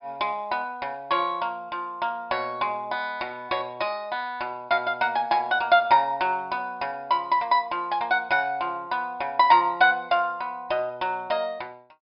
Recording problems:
low-pass filter; nothing above 5.5 kHz

